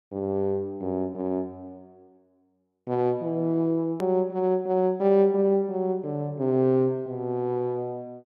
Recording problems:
hard cut with a click; at 4 s

